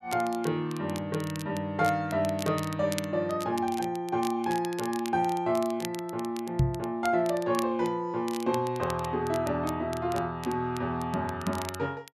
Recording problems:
crackling; vinyl, SNR 15 dB
microphone bump; at 6.5 s; peak +8 dB vs average level

